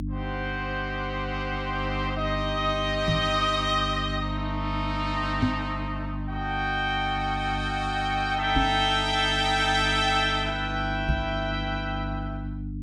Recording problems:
mains hum; 50 Hz, harmonics up to 300 Hz, SNR 7 dB
microphone bump; 4 times, first at 3 s; peak +6 dB vs average level

